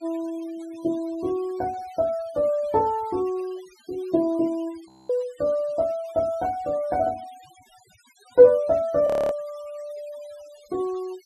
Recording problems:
denoising artefacts; signal-to-artefact ratio 26 dB
audio freezing; at 5 s and at 9 s

